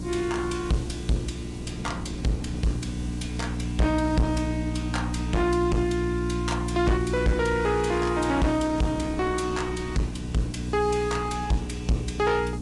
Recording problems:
codec artefacts; Vorbis, log-spectral distance 3 dB, nothing above 10.7 kHz
distorted audio; soft clipping, signal-to-distortion ratio 6 dB
hum; 60 Hz, harmonics up to 300 Hz, SNR 5 dB
hiss; slope +3 dB per octave, SNR 22 dB
wind noise; below 300 Hz, SNR 15 dB

